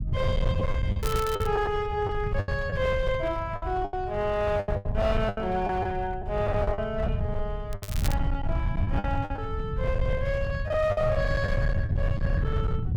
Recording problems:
distortion; hard clipping, uneven, signal-to-distortion ratio 11 dB
rumble; below 120 Hz, SNR 2 dB
lost packets; 9% of the sound replaced, filled with the last packet
crackling; at 1 s and at 7.5 s; loose cable, SNR 11 dB

